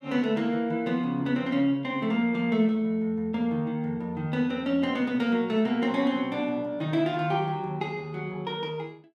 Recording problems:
none

